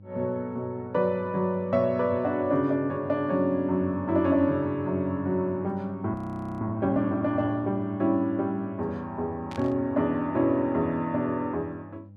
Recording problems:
hum; 50 Hz, harmonics up to 500 Hz, SNR 19 dB
audio freezing; at 6 s
static burst; at 9.5 s; peak -12 dB vs average level

